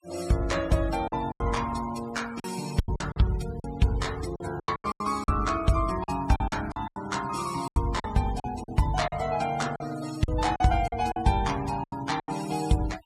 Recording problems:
noise reduction artefacts; signal-to-artefact ratio 16 dB
packet loss; 12% of the sound replaced, filled with silence

